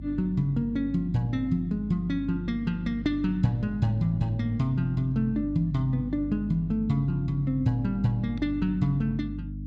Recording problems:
electrical hum; 50 Hz, harmonics up to 300 Hz, SNR 10 dB

